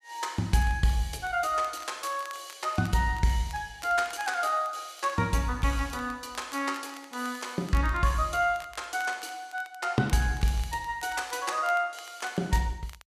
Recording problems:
crackle; vinyl, SNR 22 dB

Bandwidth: 14.5 kHz